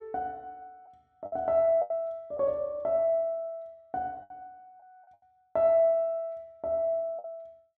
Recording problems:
lost packets; 5% of the sound replaced, filled with the last packet

